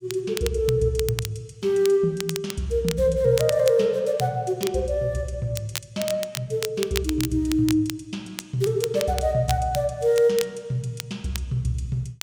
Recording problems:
crackling; vinyl, SNR 11 dB

